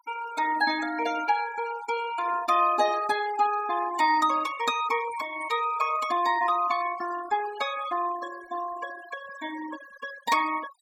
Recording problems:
denoising artefacts; signal-to-artefact ratio 13 dB

